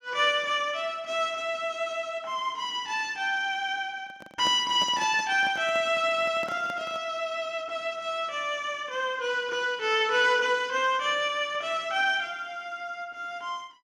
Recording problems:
microphone handling noise; from 4 to 7 s; peak -6 dB vs average level

